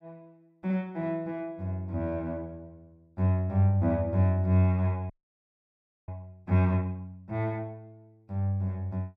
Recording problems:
audio freezing; at 5 s for 1 s

